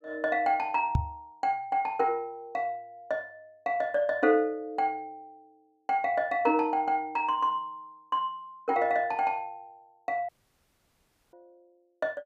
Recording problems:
microphone thump; at 1 s; peak +6 dB vs average level
audio cutting out; at 10 s for 1 s

